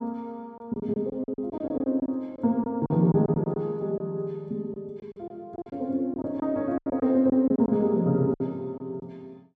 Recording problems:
lost packets; 11% of the sound replaced, filled with silence

